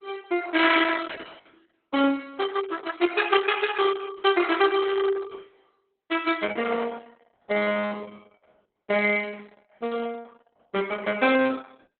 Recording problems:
codec artefacts; Opus, log-spectral distance 6 dB, nothing above 3.7 kHz

